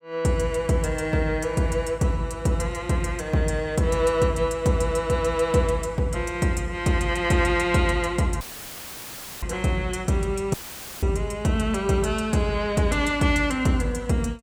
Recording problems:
dropout; at 8.5 s for 1 s and at 11 s; filled with static

